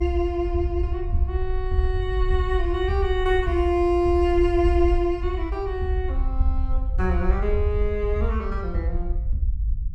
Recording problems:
rumble; below 58 Hz, SNR 3 dB

